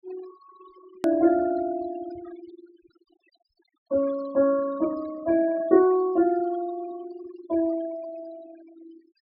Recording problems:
low-pass filter; nothing above 5.5 kHz
noise reduction artefacts; signal-to-artefact ratio 21 dB
hard cut with a click; at 1 s

